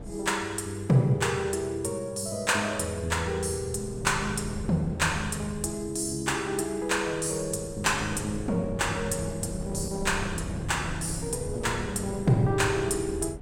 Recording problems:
wind on the microphone; below 260 Hz, SNR 11 dB

